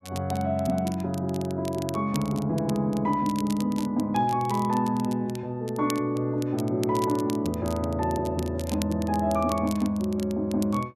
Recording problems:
crackle; vinyl, SNR 17 dB

